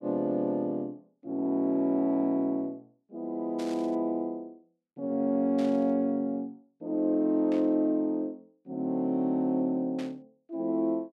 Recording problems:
static burst; 4 times, first at 3.5 s; peak -12 dB vs average level

